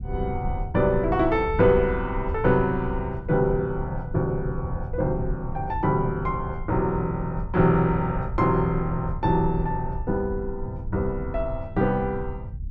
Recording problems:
low-frequency rumble; below 96 Hz, SNR 9 dB

